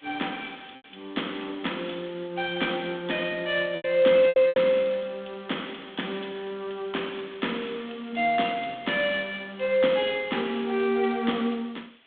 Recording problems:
telephone audio; 190 Hz to 3.6 kHz, G.726
background hiss; SNR 27 dB
packet loss; 3% of the sound replaced, filled with repeated pitch periods

